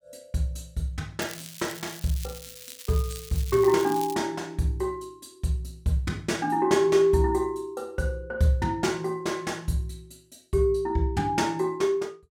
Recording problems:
crackle; from 1 to 4 s; loose cable, SNR 14 dB

